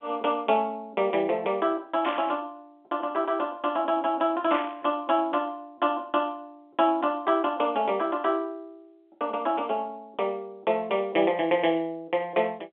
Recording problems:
telephone audio; 220 Hz to 3.4 kHz, G.711
burst of static; at 2 s and at 4.5 s; peak -3 dB vs average level

